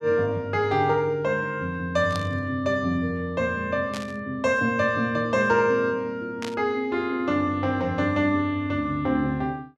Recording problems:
burst of static; at 2 s, at 4 s and at 6.5 s; peak -6 dB vs average level

